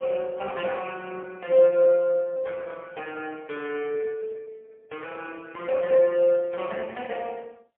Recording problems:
phone line; 260 Hz to 3.2 kHz, AMR-NB, then MP3

